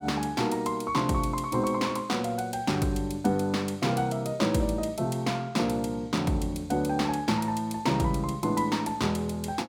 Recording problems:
none

